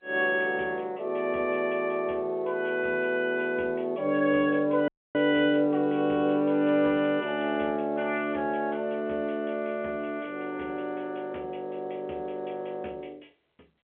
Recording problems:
telephone audio; 220 Hz to 3.4 kHz, G.711
audio cutting out; at 5 s

